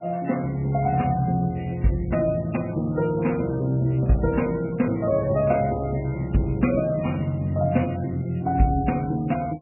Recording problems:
lossy compression; MP3, log-spectral distance 4 dB, nothing above 2.7 kHz

